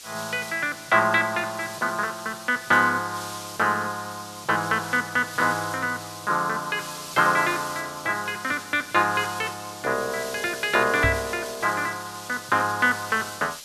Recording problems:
background hiss; SNR 13 dB
microphone bump; at 11 s; peak +2 dB vs average level

